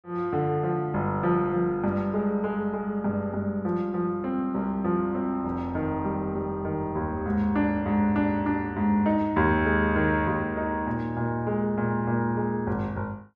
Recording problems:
none

